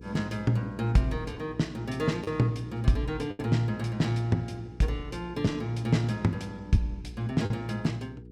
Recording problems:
hum; 60 Hz, harmonics up to 480 Hz, SNR 17 dB
lost packets; 2% of the sound replaced, filled with the last packet

